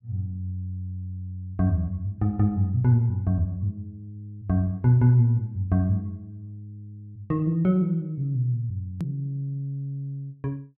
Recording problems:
edit click; at 9 s

